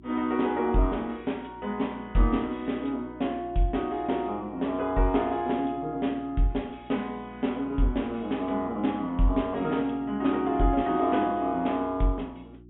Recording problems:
treble cut off; nothing above 3.6 kHz
hum; 60 Hz, harmonics up to 360 Hz, SNR 22 dB

